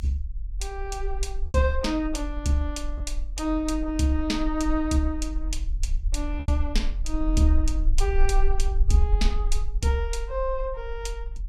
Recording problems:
low-frequency rumble; below 46 Hz, strongest tone 22 Hz, SNR 2 dB
packet loss; 1.2% of the sound replaced, filled with repeated pitch periods

